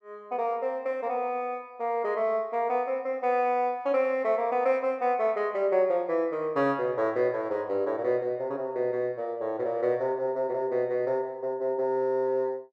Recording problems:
none

